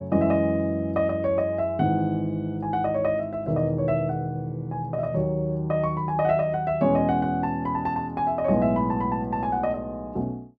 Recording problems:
none

